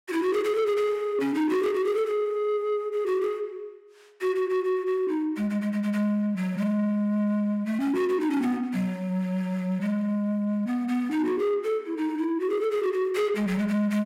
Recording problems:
distortion; soft clipping, signal-to-distortion ratio 12 dB

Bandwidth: 16 kHz